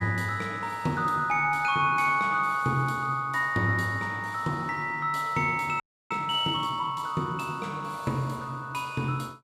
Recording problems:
frozen audio; at 6 s

